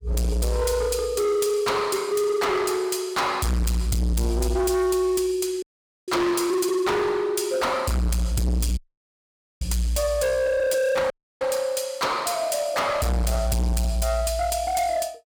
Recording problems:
distorted audio; hard clipping, signal-to-distortion ratio 6 dB
audio cutting out; at 5.5 s, at 9 s for 1 s and at 11 s

